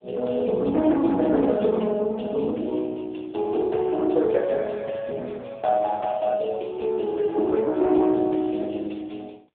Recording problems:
phone line; 220 Hz to 3.5 kHz, AMR-NB

